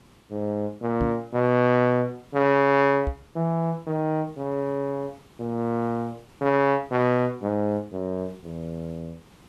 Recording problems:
hiss; slope -4 dB per octave, SNR 29 dB
knock on the microphone; at 1 s and at 3 s; peak 0 dB vs average level

